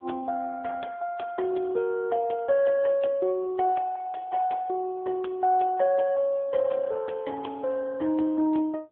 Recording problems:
telephone audio; 260 Hz to 3.4 kHz, AMR-NB

